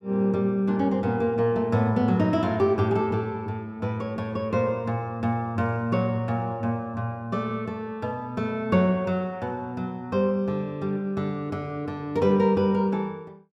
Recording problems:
none

